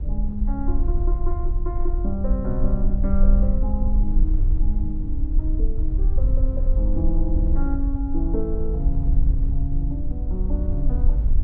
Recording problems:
wind on the microphone; below 52 Hz, SNR -6 dB

